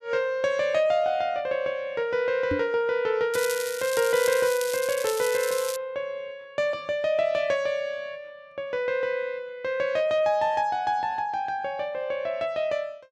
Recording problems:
knock on the microphone; at 2.5 s; peak 0 dB vs average level
crackle; from 3.5 to 6 s; loose cable, SNR 8 dB

